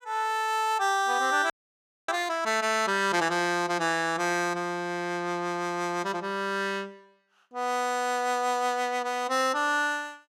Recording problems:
audio freezing; at 1.5 s for 0.5 s

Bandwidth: 16.5 kHz